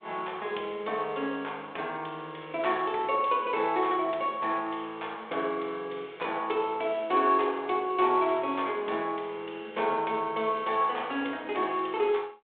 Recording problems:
phone line; 280 Hz to 3.6 kHz, G.726

